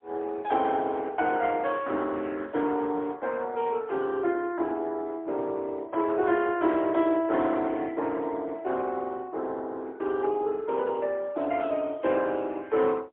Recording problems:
telephone audio; 260 Hz to 3.3 kHz, AMR-NB, then MP3

